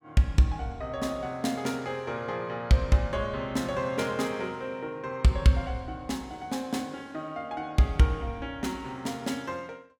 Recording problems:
none

